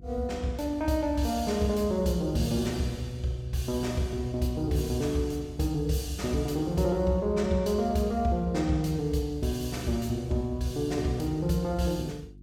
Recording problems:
hum; 50 Hz, harmonics up to 350 Hz, SNR 21 dB

